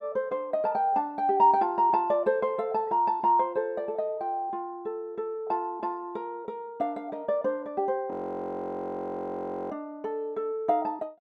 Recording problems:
frozen audio; at 8 s for 1.5 s

